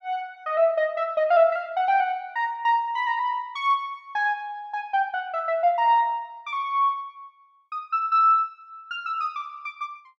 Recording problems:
none

